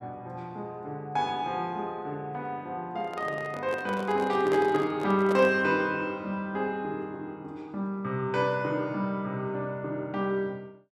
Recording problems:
microphone handling noise; from 3 to 5.5 s; peak 0 dB vs average level

